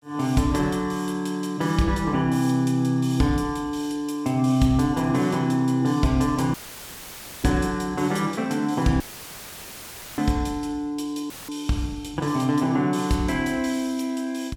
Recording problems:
audio cutting out; at 6.5 s for 1 s, at 9 s for 1 s and at 11 s; filled with static

